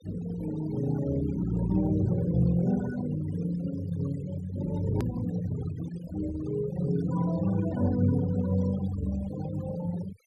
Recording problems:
noise reduction artefacts; signal-to-artefact ratio 15 dB
hard cut with a click; at 5 s

